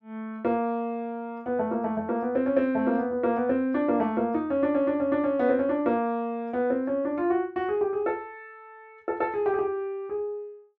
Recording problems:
none

